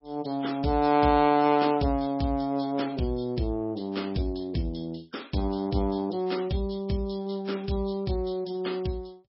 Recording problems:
lossy compression; MP3, log-spectral distance 4 dB, nothing above 5.3 kHz

